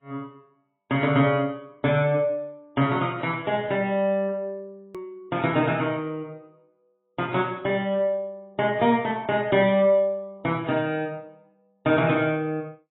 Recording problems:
codec artefacts; AAC, log-spectral distance 2 dB, nothing above 3.6 kHz
click at an edit; at 5 s

